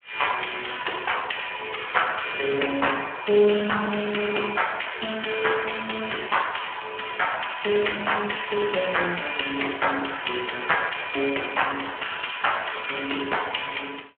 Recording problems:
telephone audio; 300 Hz to 3.3 kHz, Speex

